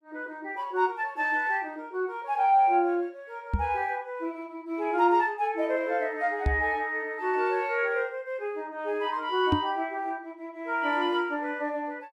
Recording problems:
microphone thump; at 3.5 s, at 6.5 s and at 9.5 s; peak +6 dB vs average level

